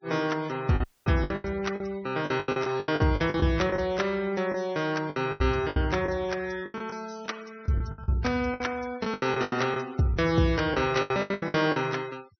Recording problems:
low-pass filter; nothing above 6.1 kHz
noise reduction artefacts; signal-to-artefact ratio 21 dB
packet loss; 15% of the sound replaced, filled with the last packet
dropout; at 1 s

